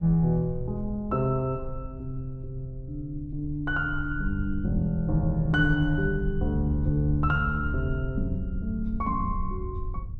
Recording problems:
low-frequency rumble; below 76 Hz, SNR 8 dB

